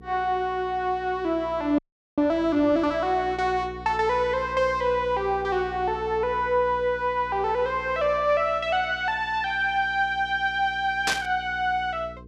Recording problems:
mains hum; 60 Hz, harmonics up to 480 Hz, SNR 19 dB
audio freezing; at 2 s
static burst; at 11 s; peak +3 dB vs average level

